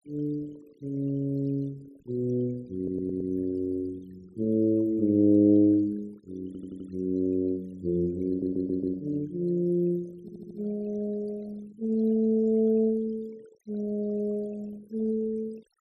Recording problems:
noise reduction artefacts; signal-to-artefact ratio 25 dB
stutter; 4 times, first at 3 s

